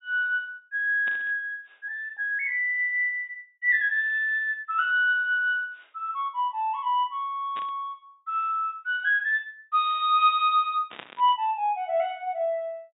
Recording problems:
low-pass filter; nothing above 4 kHz
burst of static; at 1 s, at 7.5 s and at 11 s; peak -9 dB vs average level

